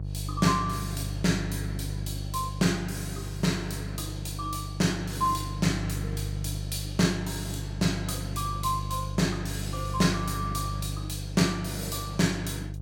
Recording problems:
electrical hum; 50 Hz, harmonics up to 500 Hz, SNR 5 dB

